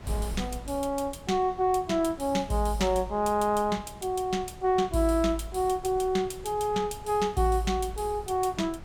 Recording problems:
wind noise; below 240 Hz, SNR 18 dB

